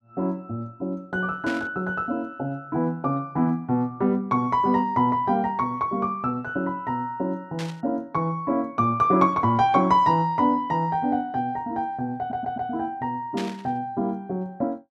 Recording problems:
static burst; at 1.5 s, at 7.5 s and at 13 s; peak -7 dB vs average level
stutter; at 12 s

